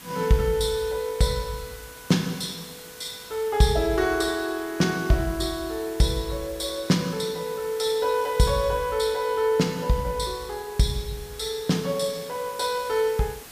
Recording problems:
hiss; slope -1 dB per octave, SNR 17 dB

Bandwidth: 15 kHz